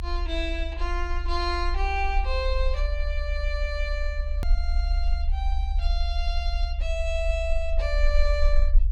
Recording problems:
rumble; below 64 Hz, SNR -3 dB
hard cut with a click; at 4.5 s

